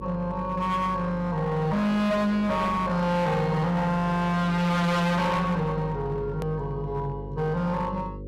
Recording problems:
distortion; hard clipping, signal-to-distortion ratio 6 dB
hum; 50 Hz, harmonics up to 550 Hz, SNR 13 dB
click at an edit; at 6.5 s

